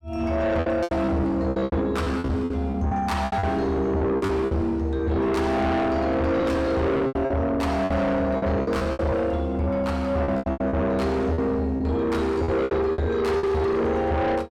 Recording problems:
distorted audio; soft clipping, signal-to-distortion ratio 7 dB
packet loss; 13% of the sound replaced, filled with repeated pitch periods

